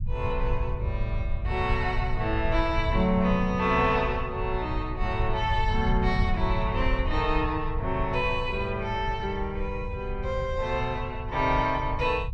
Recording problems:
low-frequency rumble; below 84 Hz, SNR 5 dB

